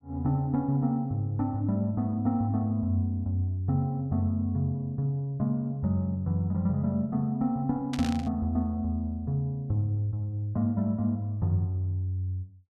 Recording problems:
static burst; at 8 s; peak -5 dB vs average level

